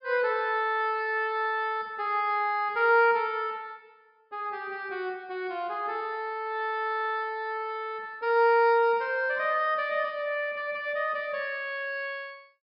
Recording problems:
treble cut off; nothing above 5.5 kHz

